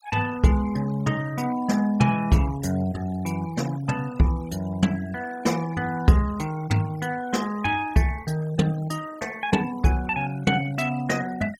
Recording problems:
noise reduction artefacts; signal-to-artefact ratio 19 dB

